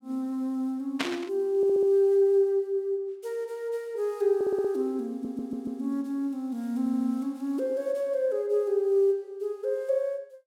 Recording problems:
burst of static; at 1 s; peak +2 dB vs average level
stutter; 4 times, first at 1.5 s

